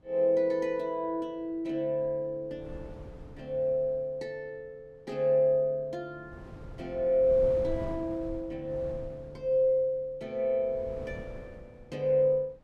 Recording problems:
wind noise; below 210 Hz, SNR 17 dB

